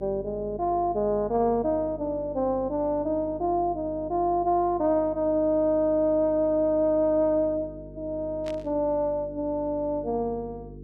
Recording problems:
electrical hum; 50 Hz, harmonics up to 450 Hz, SNR 18 dB
static burst; at 8.5 s; peak -14 dB vs average level

